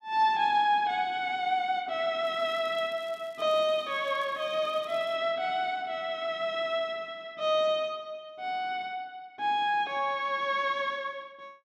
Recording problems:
crackling; from 2.5 to 5 s; loose cable, SNR 29 dB

